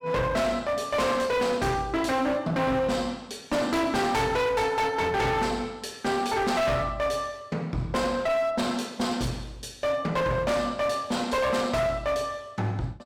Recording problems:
distorted audio; hard clipping, uneven, signal-to-distortion ratio 7 dB

